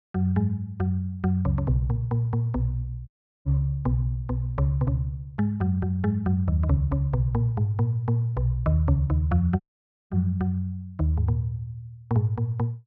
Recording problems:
audio cutting out; at 3 s and at 9.5 s for 0.5 s

